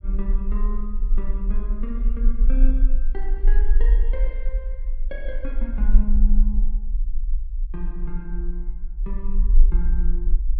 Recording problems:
low-frequency rumble; below 40 Hz, strongest tone 20 Hz, SNR -11 dB

